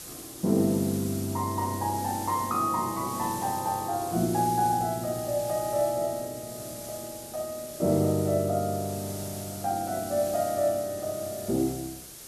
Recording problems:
hiss; SNR 11 dB

